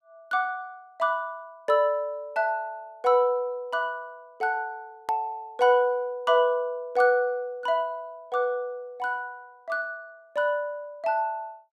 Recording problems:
edit click; at 5 s

